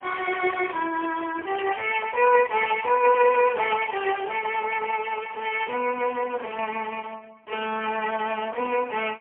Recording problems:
telephone audio; 240 Hz to 3 kHz, AMR-NB, then MP3
crackle; from 4 to 7 s; loose cable, SNR 28 dB

